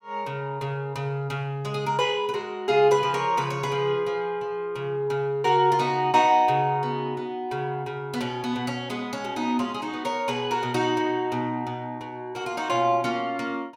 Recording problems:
none

